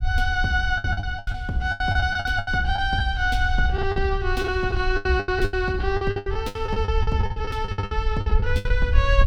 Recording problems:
low-frequency rumble; below 76 Hz, SNR 4 dB
packet loss; 19% of the sound replaced, filled with the last packet

